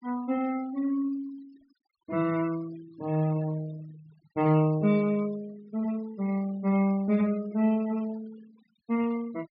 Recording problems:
low-pass filter; nothing above 5.5 kHz
denoising artefacts; signal-to-artefact ratio 22 dB

